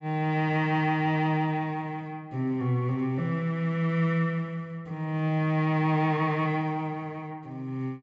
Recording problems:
treble missing; nothing above 8 kHz

